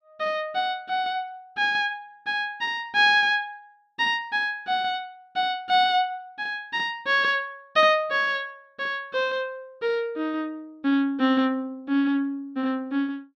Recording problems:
none

